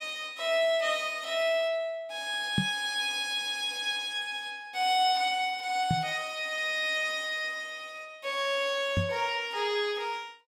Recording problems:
knock on the microphone; at 2.5 s, at 6 s and at 9 s; peak +5 dB vs average level

